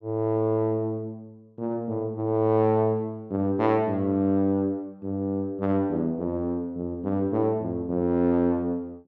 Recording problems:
treble cut off; nothing above 7.8 kHz

